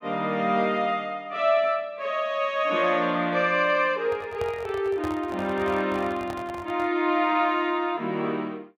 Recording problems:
handling noise; from 4 to 7 s; peak -6 dB vs average level

